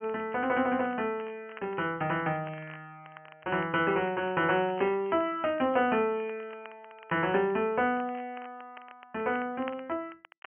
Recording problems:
low-pass filter; nothing above 3.1 kHz
crackle; vinyl, SNR 23 dB

